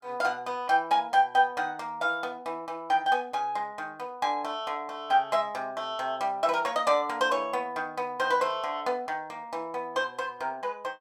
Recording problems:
none

